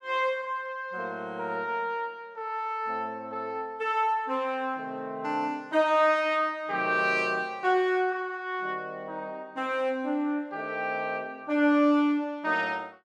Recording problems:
none

